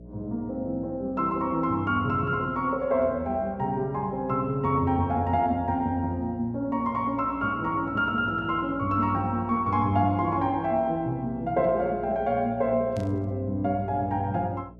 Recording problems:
hum; 60 Hz, harmonics up to 660 Hz, SNR 20 dB
burst of static; at 13 s; peak -16 dB vs average level

